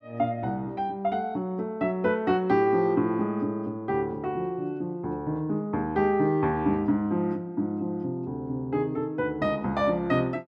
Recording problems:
none

